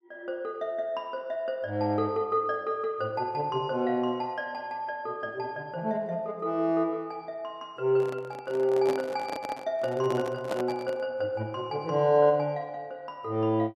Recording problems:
microphone handling noise; from 8 to 11 s; peak 0 dB vs average level

